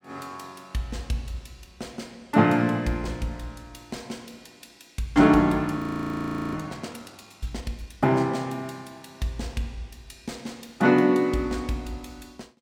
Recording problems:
frozen audio; at 6 s for 1 s

